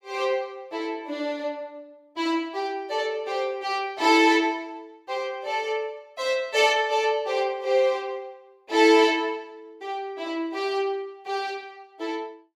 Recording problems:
none

